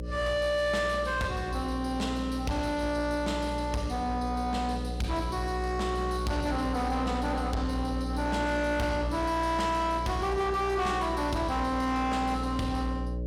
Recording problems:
distorted audio; soft clipping, signal-to-distortion ratio 11 dB
electrical hum; 60 Hz, harmonics up to 600 Hz, SNR 6 dB

